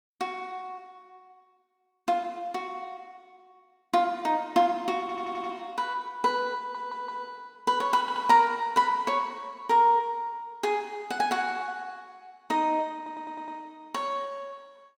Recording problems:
stutter; 4 times, first at 5 s

